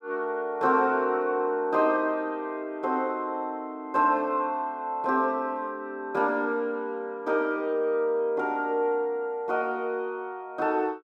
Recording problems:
none

